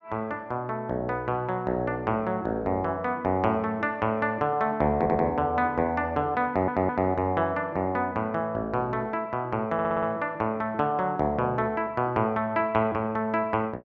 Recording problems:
stutter; at 5 s, at 6.5 s and at 9.5 s

